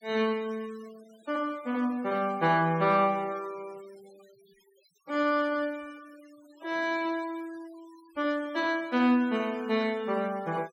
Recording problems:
denoising artefacts; signal-to-artefact ratio 25 dB

